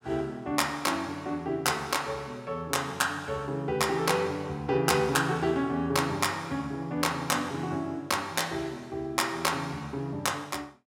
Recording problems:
none

